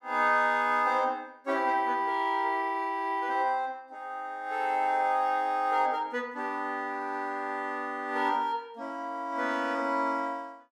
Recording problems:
none

